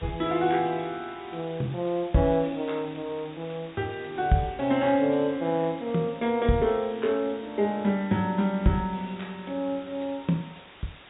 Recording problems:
treble missing; nothing above 4 kHz
background hiss; SNR 20 dB

